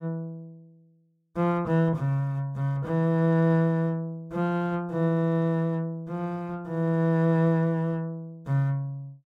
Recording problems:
none

